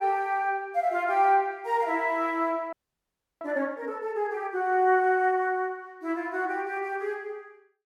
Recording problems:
frozen audio; at 2.5 s for 0.5 s

